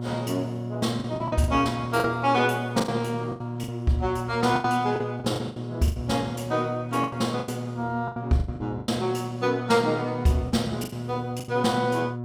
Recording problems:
hum; 60 Hz, harmonics up to 960 Hz, SNR 7 dB
packet loss; 12% of the sound replaced, filled with the last packet

